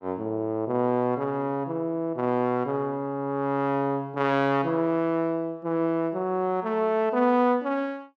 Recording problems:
none

